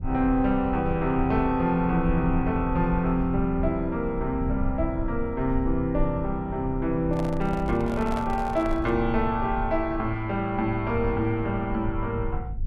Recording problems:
rumble; below 76 Hz, SNR 9 dB
microphone handling noise; from 7 to 9 s; peak -5 dB vs average level

